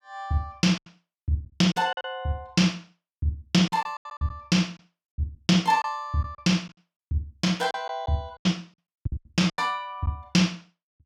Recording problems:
packet loss; 11% of the sound replaced, filled with silence

